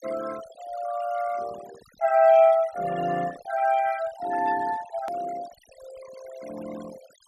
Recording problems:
noise reduction artefacts; signal-to-artefact ratio 18 dB
click at an edit; at 5 s

